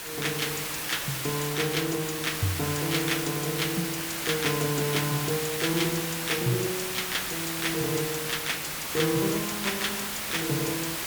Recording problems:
background hiss; slope -1 dB per octave, SNR 1 dB

